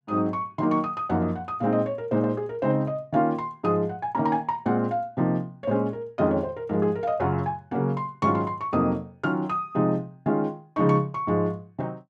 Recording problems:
none

